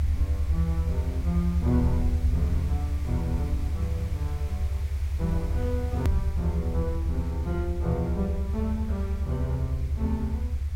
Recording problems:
hiss; SNR 17 dB
low-frequency rumble; below 78 Hz, strongest tone 68 Hz, SNR -4 dB
edit click; at 6 s

